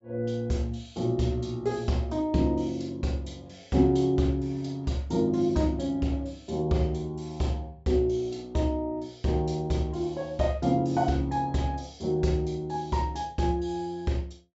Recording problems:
low-pass filter; nothing above 8 kHz

